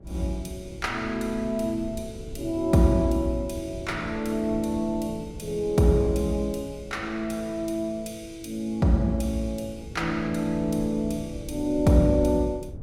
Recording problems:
wind noise; below 200 Hz, SNR 16 dB

